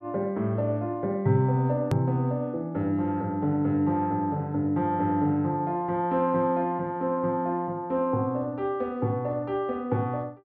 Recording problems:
treble cut off; nothing above 5.6 kHz
edit click; at 2 s

